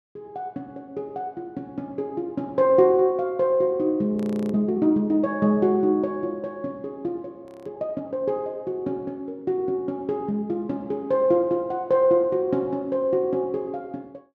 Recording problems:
frozen audio; at 4 s and at 7.5 s

